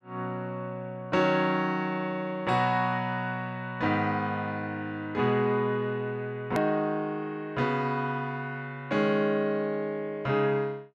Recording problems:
hard cut with a click; at 6.5 s

